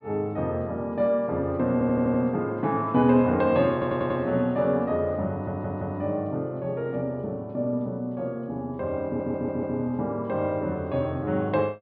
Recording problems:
low-pass filter; nothing above 5 kHz
audio stuttering; 4 times, first at 1.5 s

